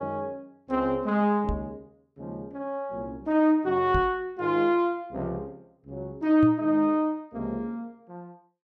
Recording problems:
microphone thump; at 1.5 s, at 4 s and at 6.5 s; peak 0 dB vs average level

